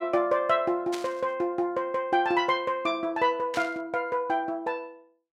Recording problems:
burst of static; at 1 s and at 3.5 s; peak -5 dB vs average level

